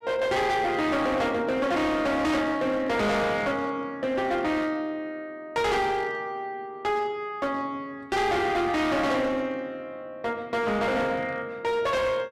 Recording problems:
distortion; hard clipping, signal-to-distortion ratio 8 dB

